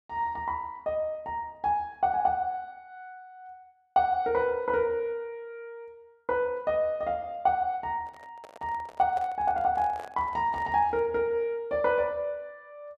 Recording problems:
microphone handling noise; from 8 to 11 s; peak -10 dB vs average level

